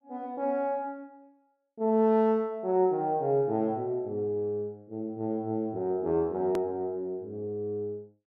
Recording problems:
hard cut with a click; at 6.5 s

